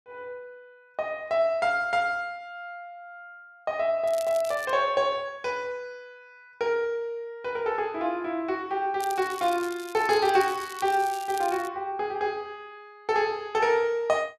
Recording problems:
crackle; at 4 s and from 9 to 12 s; loose cable, SNR 17 dB

